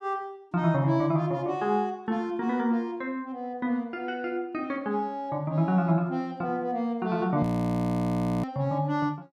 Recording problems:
audio freezing; at 7.5 s for 1 s

